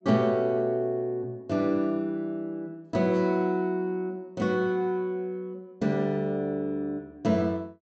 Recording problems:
low-pass filter; nothing above 8 kHz

